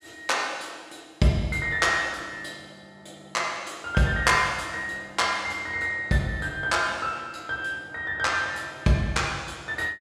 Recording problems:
none

